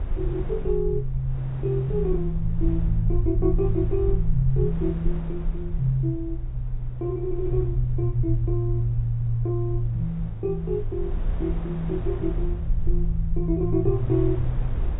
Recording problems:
low-pass filter; nothing above 4 kHz
low-frequency rumble; below 52 Hz, SNR 5 dB
wind noise; below 310 Hz, SNR 15 dB

